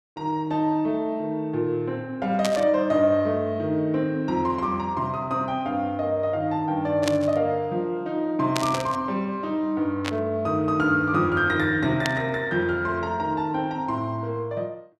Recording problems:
burst of static; 5 times, first at 2.5 s; peak +1 dB vs average level

